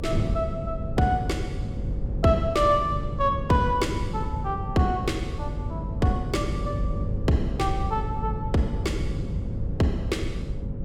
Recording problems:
hum; 50 Hz, harmonics up to 550 Hz, SNR 9 dB
wind on the microphone; below 150 Hz, SNR 5 dB

